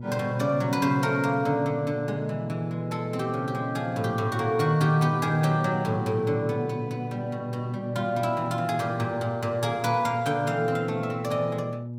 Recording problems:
hum; 60 Hz, harmonics up to 600 Hz, SNR 9 dB

